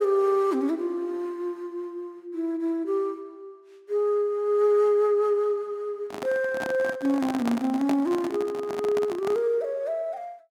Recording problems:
handling noise; from 6 to 9.5 s; peak -1 dB vs average level

